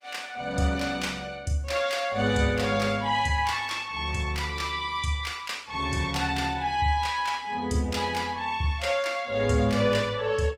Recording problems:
codec artefacts; Opus, log-spectral distance 3 dB

